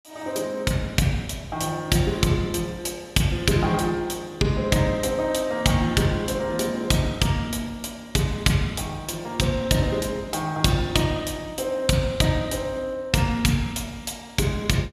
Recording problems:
none

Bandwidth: 14 kHz